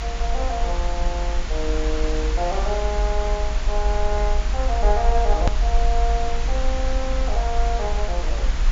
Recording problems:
low-pass filter; nothing above 7.4 kHz
hum; 60 Hz, harmonics up to 540 Hz, SNR 16 dB
background hiss; slope -2 dB per octave, SNR 6 dB
rumble; below 50 Hz, SNR -2 dB
click at an edit; at 5.5 s

